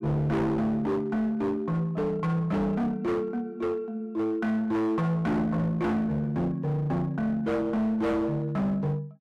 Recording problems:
distortion; hard clipping, uneven, signal-to-distortion ratio 7 dB

